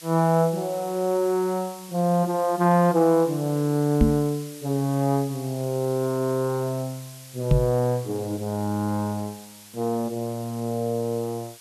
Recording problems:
hiss; slope +4 dB per octave, SNR 18 dB
microphone bump; at 4 s and at 7.5 s; peak +8 dB vs average level

